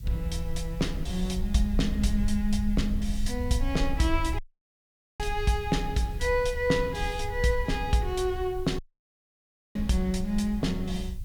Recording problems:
hiss; slope +3 dB per octave, SNR 27 dB
rumble; below 64 Hz, SNR 7 dB
audio cutting out; at 4.5 s for 1 s and at 9 s for 1 s

